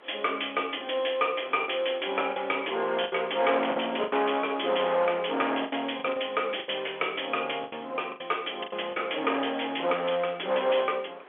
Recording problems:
telephone audio; 320 Hz to 3.4 kHz, G.711
distorted audio; hard clipping, uneven, signal-to-distortion ratio 9 dB
wind noise; below 1.7 kHz, SNR 20 dB
packet loss; 7% of the sound replaced, filled with the last packet
crackle; from 2.5 to 5.5 s; loose cable, SNR 25 dB

